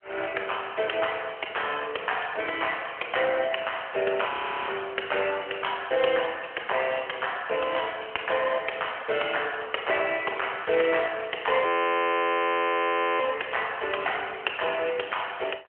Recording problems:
telephone audio; 340 Hz to 3.2 kHz, AMR-NB
frozen audio; at 4.5 s and at 12 s for 1.5 s

